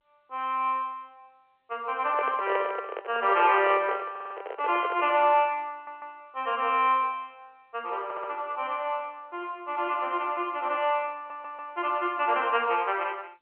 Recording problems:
telephone audio; 320 Hz to 3.2 kHz, G.711
microphone handling noise; from 2 to 5 s; peak 0 dB vs average level
audio stuttering; 4 times, first at 4 s

